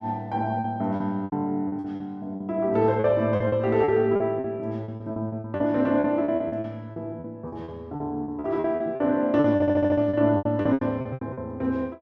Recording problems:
lost packets; 16% of the sound replaced, filled with repeated pitch periods
audio stuttering; at 9.5 s

